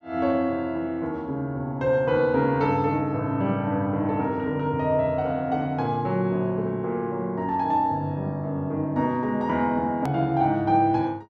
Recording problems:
edit click; at 10 s

